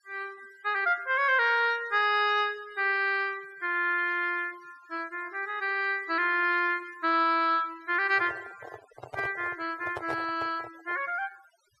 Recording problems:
denoising artefacts; signal-to-artefact ratio 23 dB
handling noise; from 8 to 11 s; peak -5 dB vs average level

